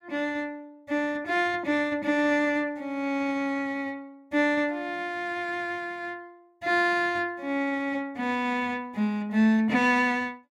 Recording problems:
none

